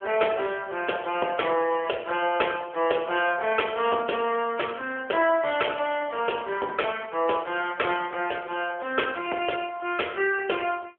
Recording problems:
phone line; 300 Hz to 3.3 kHz, AMR-NB

